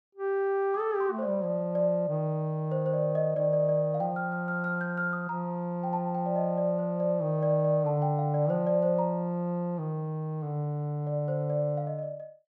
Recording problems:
none

